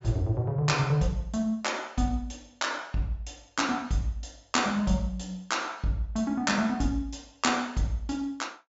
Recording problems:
low-pass filter; nothing above 8 kHz

